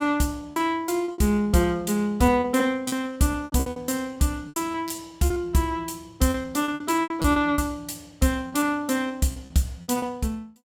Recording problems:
lost packets; 14% of the sound replaced, filled with repeated pitch periods

